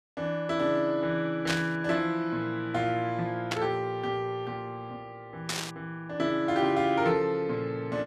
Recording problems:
burst of static; at 1.5 s, at 3.5 s and at 5.5 s; peak +3 dB vs average level

